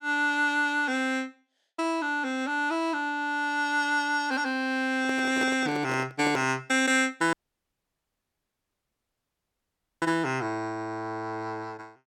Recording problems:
handling noise; from 5 to 6.5 s; peak -2 dB vs average level
audio cutting out; at 7.5 s for 2.5 s

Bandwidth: 17.5 kHz